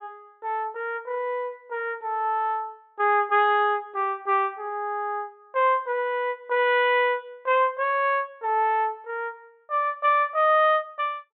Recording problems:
low-pass filter; nothing above 4 kHz

